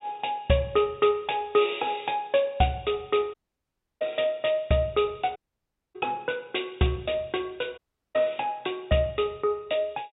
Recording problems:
treble cut off; nothing above 4 kHz
audio cutting out; at 3.5 s for 0.5 s, at 5.5 s for 0.5 s and at 8 s

